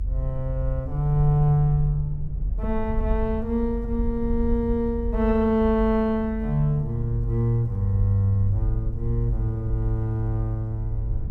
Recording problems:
rumble; below 70 Hz, strongest tone 46 Hz, SNR 6 dB

